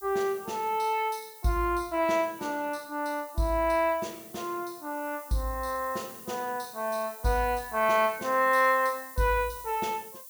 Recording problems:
hiss; SNR 16 dB

